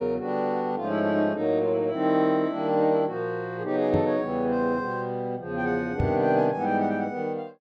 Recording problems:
knock on the microphone; at 4 s and at 6 s; peak +2 dB vs average level

